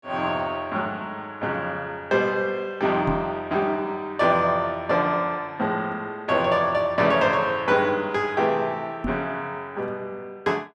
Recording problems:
microphone bump; at 3 s and at 9 s; peak +1 dB vs average level

